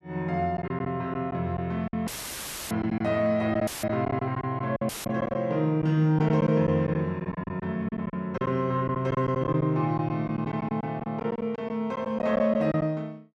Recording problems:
packet loss; 10% of the sound replaced, filled with silence
dropout; at 2 s for 0.5 s, at 3.5 s and at 5 s; filled with static

